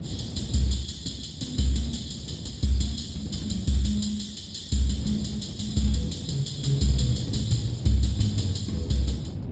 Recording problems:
codec artefacts; Speex, log-spectral distance 6 dB, nothing above 7.6 kHz
wind on the microphone; below 260 Hz, SNR 10 dB

